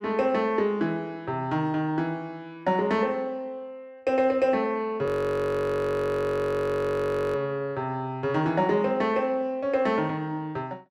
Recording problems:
frozen audio; at 5 s for 2.5 s

